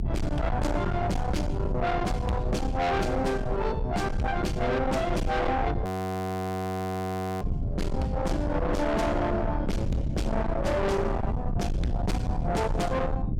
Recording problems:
distortion; soft clipping, signal-to-distortion ratio 7 dB
rumble; below 220 Hz, SNR 3 dB
frozen audio; at 6 s for 1.5 s

